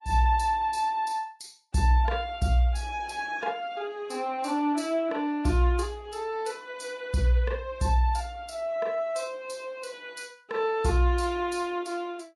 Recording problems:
lossy codec; Vorbis, log-spectral distance 3 dB, nothing above 10.7 kHz

